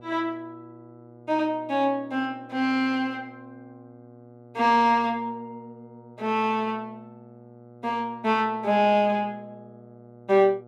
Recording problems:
electrical hum; 60 Hz, harmonics up to 1.4 kHz, SNR 24 dB

